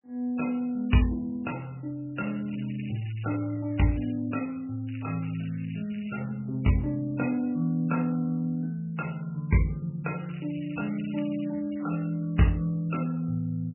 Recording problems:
codec artefacts; MP3, log-spectral distance 8 dB, nothing above 2.7 kHz
crackle; from 2 to 4 s, from 5 to 6.5 s and from 10 to 12 s; loose cable, SNR 21 dB

